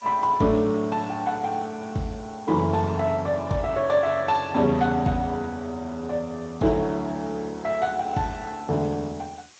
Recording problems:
lossy codec; Speex, log-spectral distance 6 dB
background hiss; slope +2 dB per octave, SNR 27 dB

